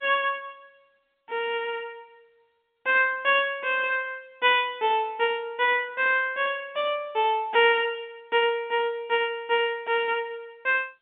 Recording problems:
phone line; 190 Hz to 3.5 kHz, G.711

